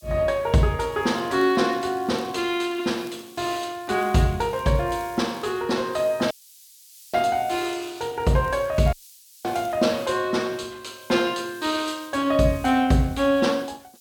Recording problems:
background hiss; SNR 25 dB
crackle; from 1 to 5.5 s and from 7.5 to 10 s; loose cable, SNR 29 dB
dropout; at 6.5 s for 1 s and at 9 s for 0.5 s

